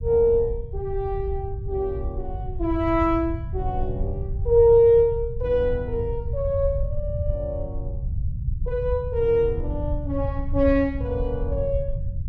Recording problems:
rumble; below 96 Hz, SNR 7 dB

